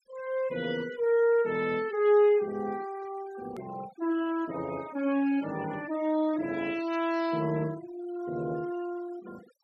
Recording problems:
noise reduction artefacts; signal-to-artefact ratio 19 dB
hard cut with a click; at 3.5 s

